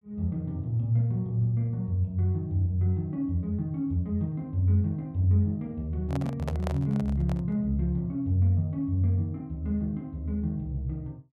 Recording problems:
handling noise; from 6 to 7.5 s; peak -3 dB vs average level

